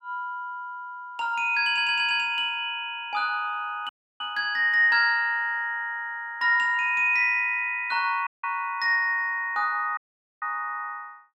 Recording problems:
stutter; at 1.5 s
dropout; at 4 s, at 8.5 s and at 10 s

